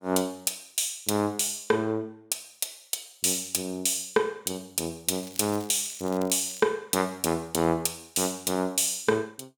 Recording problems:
crackling; from 5 to 6.5 s; loose cable, SNR 19 dB

